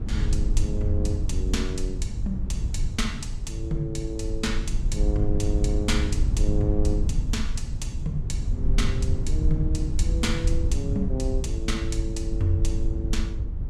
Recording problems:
low-frequency rumble; below 74 Hz, SNR -3 dB

